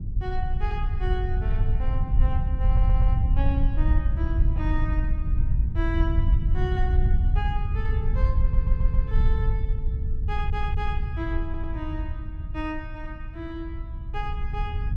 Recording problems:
rumble; below 74 Hz, SNR -9 dB
audio stuttering; 4 times, first at 2.5 s

